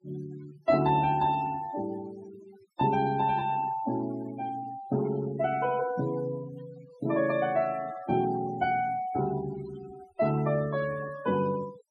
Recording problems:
noise reduction artefacts; signal-to-artefact ratio 17 dB

